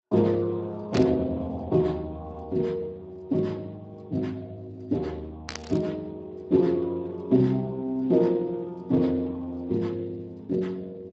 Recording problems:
lossy compression; Speex, log-spectral distance 2 dB, nothing above 7.3 kHz
static burst; at 1 s and at 5.5 s; peak -3 dB vs average level

